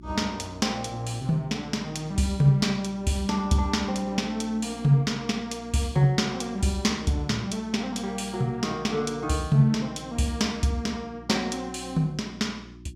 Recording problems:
electrical hum; 60 Hz, harmonics up to 360 Hz, SNR 20 dB

